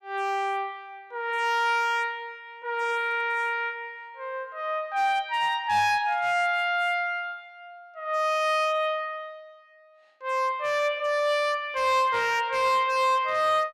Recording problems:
distorted audio; hard clipping, signal-to-distortion ratio 11 dB

